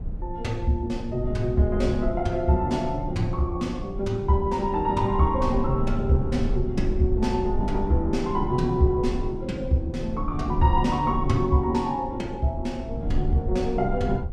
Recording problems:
low-frequency rumble; below 82 Hz, SNR 8 dB

